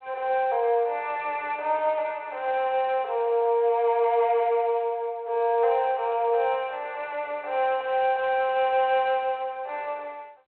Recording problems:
telephone audio; 340 Hz to 3.2 kHz, G.726

